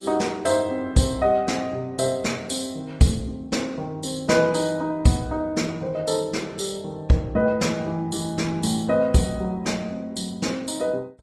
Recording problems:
codec artefacts; Vorbis, then Opus, log-spectral distance 4 dB, nothing above 11.6 kHz

